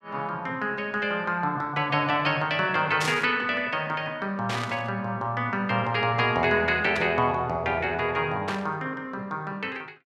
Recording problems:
static burst; 4 times, first at 3 s; peak -1 dB vs average level

